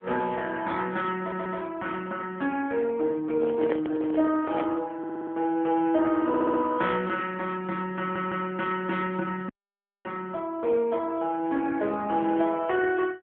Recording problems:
phone line; 240 Hz to 3.4 kHz, AMR-NB
audio stuttering; 4 times, first at 1 s
microphone handling noise; from 3.5 to 4.5 s; peak -1 dB vs average level
dropout; at 9.5 s for 0.5 s

